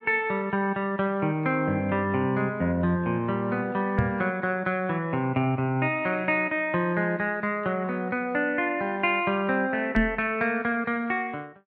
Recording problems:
microphone thump; at 4 s and at 10 s; peak +5 dB vs average level

